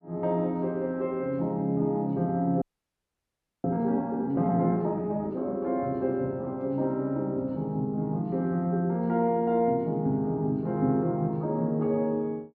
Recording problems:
frozen audio; at 2.5 s for 1 s

